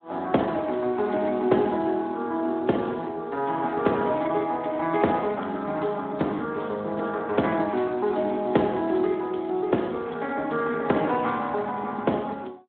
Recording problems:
telephone audio; 170 Hz to 3.7 kHz, Speex

